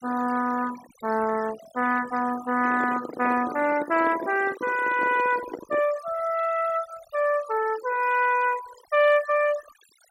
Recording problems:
denoising artefacts; signal-to-artefact ratio 16 dB
handling noise; from 2.5 to 6 s; peak -5 dB vs average level

